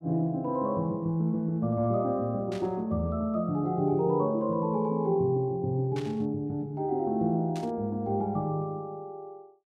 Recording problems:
burst of static; at 2.5 s, at 6 s and at 7.5 s; peak -10 dB vs average level

